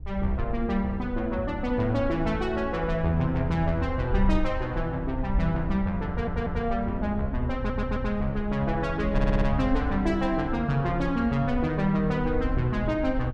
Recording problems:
wind noise; below 68 Hz, SNR 7 dB
stutter; at 6 s, at 7.5 s and at 9 s

